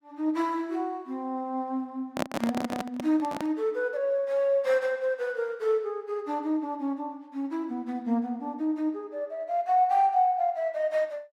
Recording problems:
handling noise; from 2 to 3.5 s; peak +4 dB vs average level

